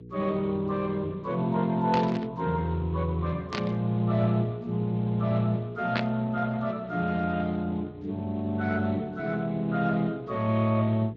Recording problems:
lossy codec; Speex, log-spectral distance 3 dB
hum; 60 Hz, harmonics up to 480 Hz, SNR 20 dB
burst of static; at 2 s, at 3.5 s and at 6 s; peak 0 dB vs average level

